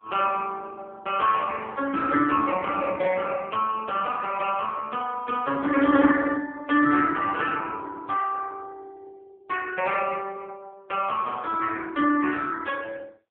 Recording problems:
telephone audio; 220 Hz to 3.2 kHz, AMR-NB

